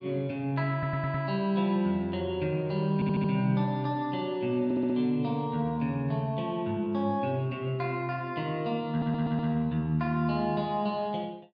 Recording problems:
stutter; 4 times, first at 0.5 s

